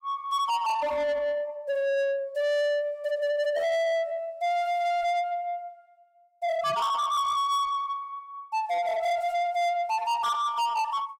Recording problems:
distorted audio; soft clipping, signal-to-distortion ratio 8 dB

